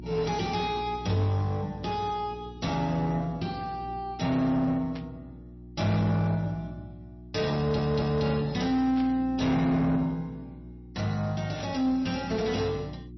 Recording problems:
lossy compression; MP3, log-spectral distance 3 dB, nothing above 5.8 kHz
distorted audio; soft clipping, signal-to-distortion ratio 10 dB
electrical hum; 60 Hz, harmonics up to 360 Hz, SNR 16 dB
burst of static; at 5 s, at 9 s and at 12 s; peak -13 dB vs average level
audio stuttering; at 7.5 s

